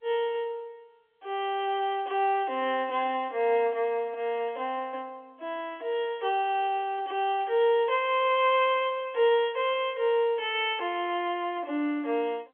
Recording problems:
phone line; 260 Hz to 3.4 kHz, G.711

